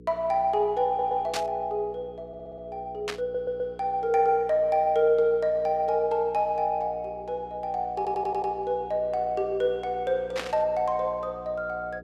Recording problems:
electrical hum; 60 Hz, harmonics up to 480 Hz, SNR 22 dB
audio stuttering; 4 times, first at 1 s
burst of static; at 1.5 s, at 3 s and at 10 s; peak -1 dB vs average level

